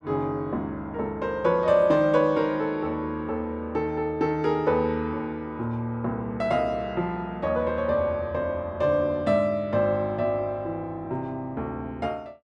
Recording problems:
none

